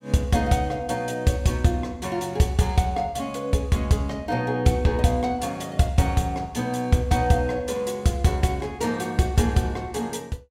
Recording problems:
none

